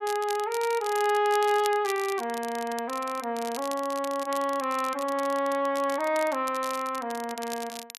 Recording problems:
crackling; vinyl, SNR 14 dB

